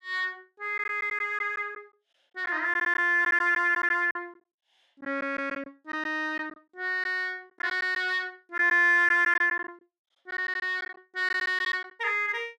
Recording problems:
packet loss; 8% of the sound replaced, filled with silence

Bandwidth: 14.5 kHz